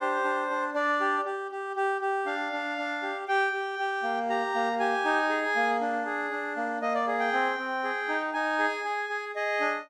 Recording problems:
none

